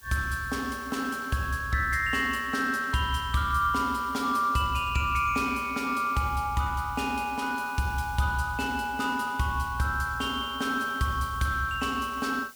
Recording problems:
hiss; slope 0 dB per octave, SNR 22 dB

